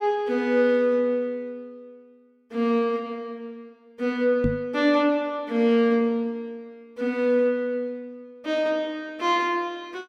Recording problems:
knock on the microphone; at 4.5 s; peak +3 dB vs average level

